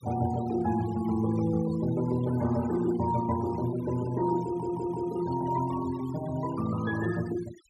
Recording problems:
noise reduction artefacts; signal-to-artefact ratio 17 dB
stutter; at 4.5 s

